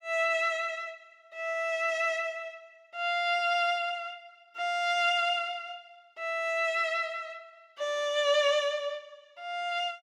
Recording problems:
none

